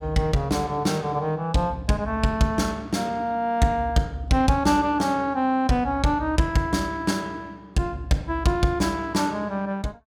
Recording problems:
none

